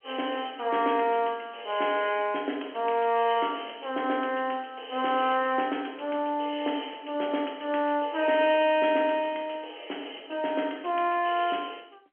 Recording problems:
phone line; 220 Hz to 3.3 kHz, G.711

